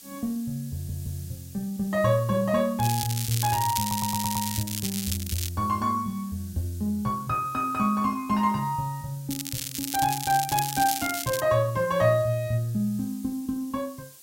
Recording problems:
hiss; SNR 19 dB
audio stuttering; at 0.5 s and at 4 s
crackling; from 3 to 5.5 s and from 9.5 to 11 s; loose cable, SNR 4 dB

